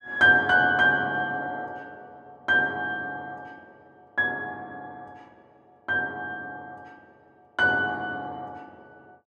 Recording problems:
none

